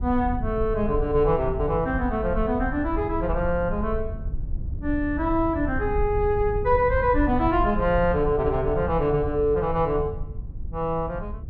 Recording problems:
low-frequency rumble; below 84 Hz, SNR 8 dB

